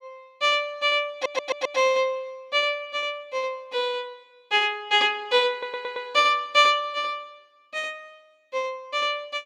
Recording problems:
stutter; at 1 s and at 5.5 s

